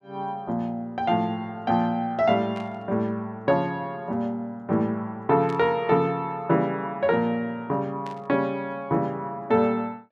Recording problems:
static burst; at 2.5 s, at 5.5 s and at 8 s; peak -14 dB vs average level

